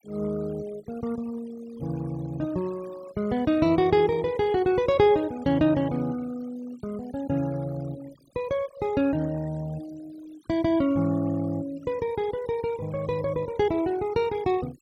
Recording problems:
noise reduction artefacts; signal-to-artefact ratio 21 dB

